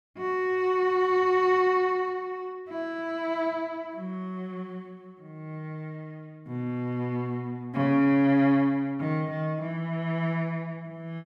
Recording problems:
none

